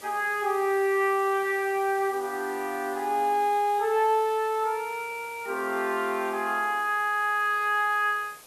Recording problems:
background hiss; SNR 21 dB

